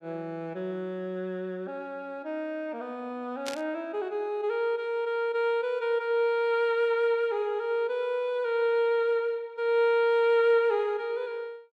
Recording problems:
static burst; at 3.5 s; peak -3 dB vs average level

